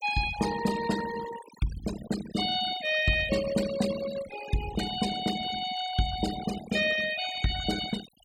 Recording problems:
denoising artefacts; signal-to-artefact ratio 10 dB

